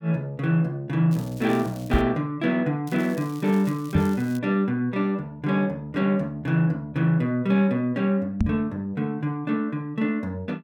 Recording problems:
crackling; at 1 s and from 3 to 4.5 s; loose cable, SNR 22 dB
knock on the microphone; at 2 s, at 4 s and at 8.5 s; peak +6 dB vs average level

